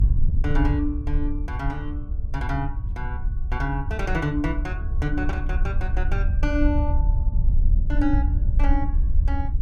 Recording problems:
rumble; below 88 Hz, SNR 9 dB
wind on the microphone; below 66 Hz, SNR -3 dB

